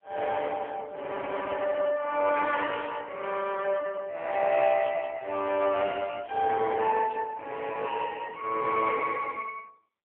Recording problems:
phone line; 340 Hz to 2.8 kHz, AMR-NB

